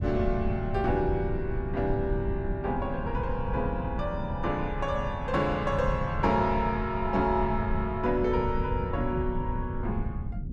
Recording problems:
rumble; below 130 Hz, SNR 4 dB

